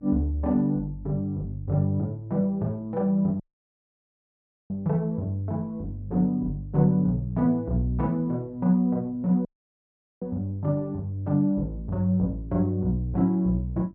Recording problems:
hum; 50 Hz, harmonics up to 650 Hz, SNR 27 dB
dropout; at 3.5 s for 1.5 s and at 9.5 s for 1 s

